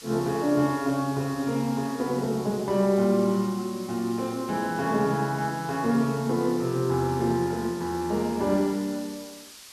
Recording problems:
hiss; slope +2 dB per octave, SNR 18 dB

